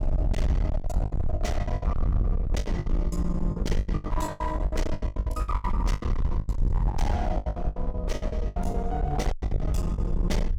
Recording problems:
distortion; hard clipping, uneven, signal-to-distortion ratio 5 dB
rumble; below 72 Hz, SNR -3 dB
lost packets; 20% of the sound replaced, filled with the last packet

